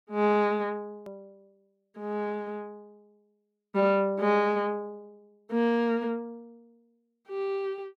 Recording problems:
hard cut with a click; at 1 s

